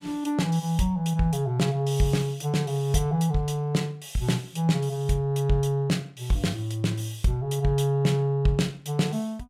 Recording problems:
none

